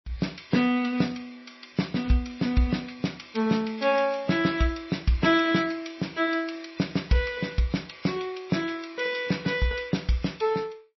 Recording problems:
codec artefacts; MP3, log-spectral distance 5 dB, nothing above 5.7 kHz

